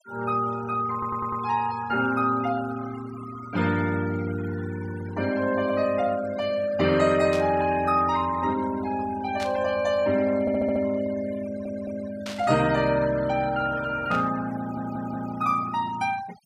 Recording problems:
noise reduction artefacts; signal-to-artefact ratio 17 dB
audio stuttering; 4 times, first at 1 s
static burst; 4 times, first at 7.5 s; peak -6 dB vs average level

